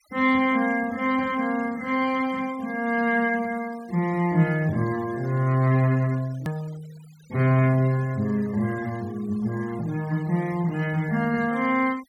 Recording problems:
denoising artefacts; signal-to-artefact ratio 23 dB
click at an edit; at 6.5 s

